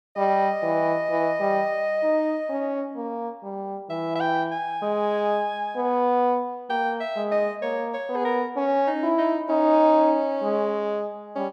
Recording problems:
none

